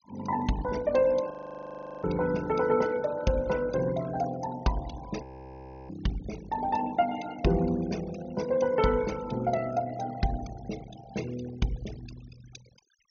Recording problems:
treble missing; nothing above 6.5 kHz
noise reduction artefacts; signal-to-artefact ratio 17 dB
frozen audio; at 1.5 s for 0.5 s and at 5 s for 0.5 s

